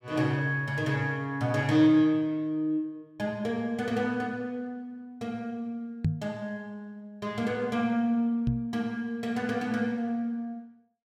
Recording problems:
knock on the microphone; at 6 s and at 8.5 s; peak +6 dB vs average level

